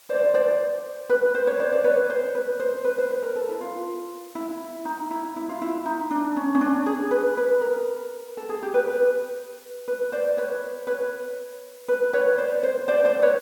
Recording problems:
background hiss; SNR 24 dB

